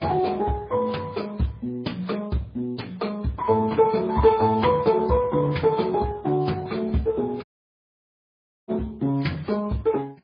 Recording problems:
lossy compression; Speex, then MP3, log-spectral distance 3 dB, nothing above 4.1 kHz
dropout; at 7.5 s for 1 s

